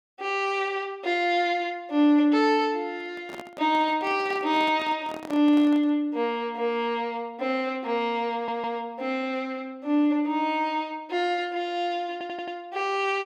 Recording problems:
microphone handling noise; from 3 to 6 s; peak -10 dB vs average level
audio stuttering; at 8.5 s and at 12 s

